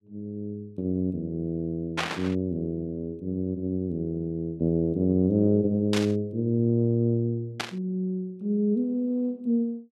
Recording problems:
burst of static; at 2 s, at 6 s and at 7.5 s; peak +3 dB vs average level

